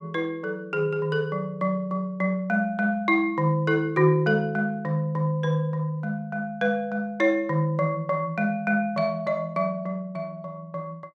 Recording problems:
none

